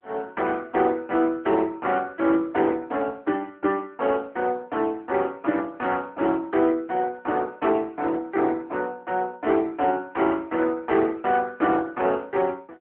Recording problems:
telephone audio; 260 Hz to 3.4 kHz, AMR-NB

